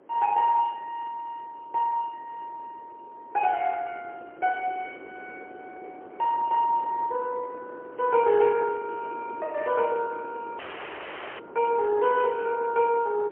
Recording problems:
phone line; 280 Hz to 3 kHz, AMR-NB, then MP3
wind noise; below 600 Hz, SNR 19 dB
audio cutting out; at 11 s for 1 s

